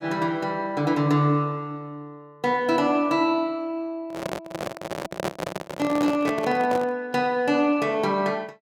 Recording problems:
handling noise; from 4 to 7 s; peak 0 dB vs average level

